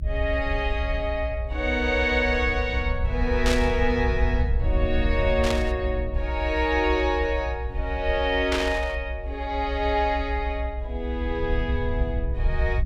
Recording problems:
rumble; below 66 Hz, SNR 3 dB
static burst; at 3.5 s, at 5.5 s and at 8.5 s; peak +2 dB vs average level

